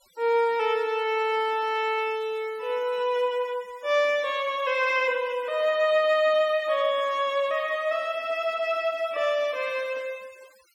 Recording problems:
noise reduction artefacts; signal-to-artefact ratio 26 dB

